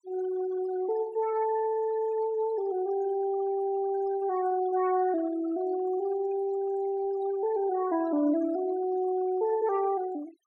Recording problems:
denoising artefacts; signal-to-artefact ratio 21 dB

